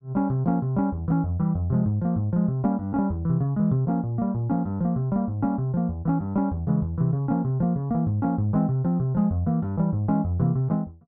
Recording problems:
none

